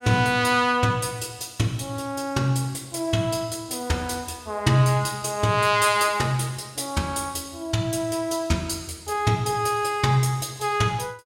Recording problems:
none

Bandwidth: 16 kHz